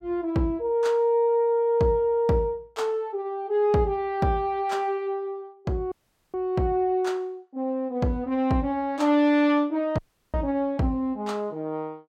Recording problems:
dropout; at 6 s and at 10 s

